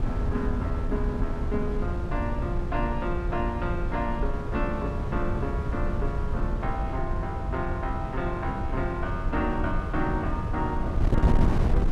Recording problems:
wind noise; below 120 Hz, SNR -2 dB

